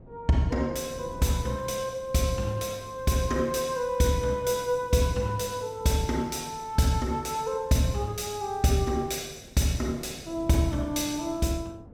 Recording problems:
wind on the microphone; below 340 Hz, SNR 20 dB

